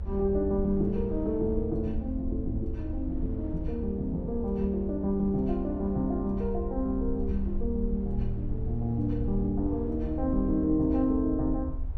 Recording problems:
rumble; below 74 Hz, SNR 7 dB
wind noise; below 550 Hz, SNR 24 dB

